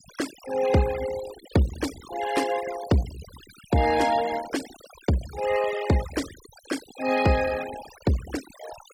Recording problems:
denoising artefacts; signal-to-artefact ratio 13 dB

